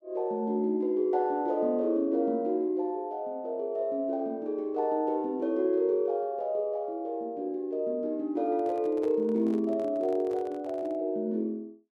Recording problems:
handling noise; from 8.5 to 11 s; peak -13 dB vs average level

